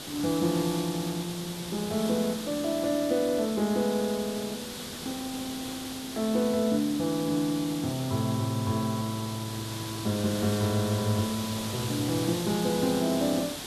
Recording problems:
background hiss; SNR 8 dB

